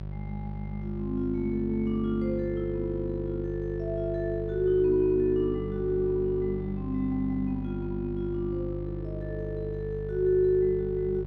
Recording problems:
hum; 50 Hz, harmonics up to 750 Hz, SNR 8 dB

